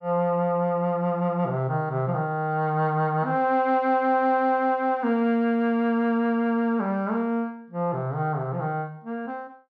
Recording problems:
none

